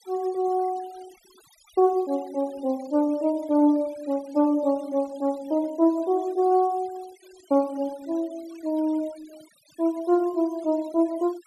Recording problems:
noise reduction artefacts; signal-to-artefact ratio 25 dB

